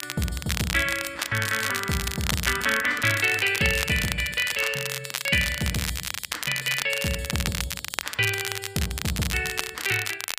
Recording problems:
crackling; vinyl, SNR 4 dB

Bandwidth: 15 kHz